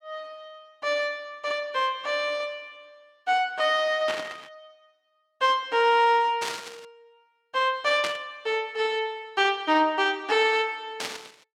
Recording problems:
static burst; 4 times, first at 4 s; peak -2 dB vs average level

